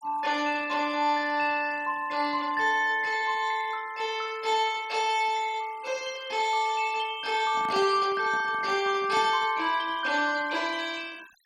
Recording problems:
noise reduction artefacts; signal-to-artefact ratio 23 dB
handling noise; from 7.5 to 9.5 s; peak -6 dB vs average level

